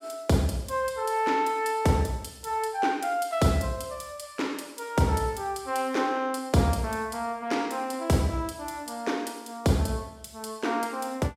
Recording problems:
none

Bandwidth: 16 kHz